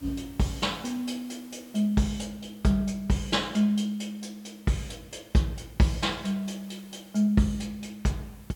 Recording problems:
background hiss; slope -3 dB per octave, SNR 26 dB

